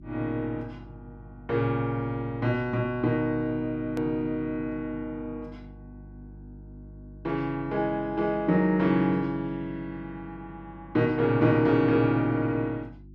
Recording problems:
hum; 50 Hz, harmonics up to 350 Hz, SNR 20 dB
click at an edit; at 4 s

